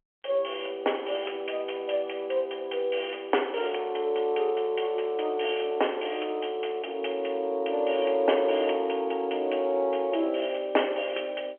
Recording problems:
phone line; 300 Hz to 3.2 kHz, G.711

